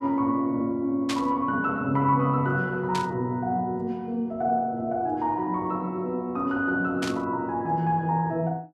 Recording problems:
static burst; at 1 s, at 3 s and at 7 s; peak -1 dB vs average level

